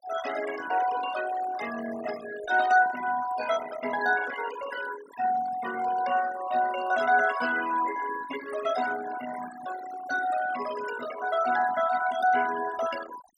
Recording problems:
noise reduction artefacts; signal-to-artefact ratio 11 dB

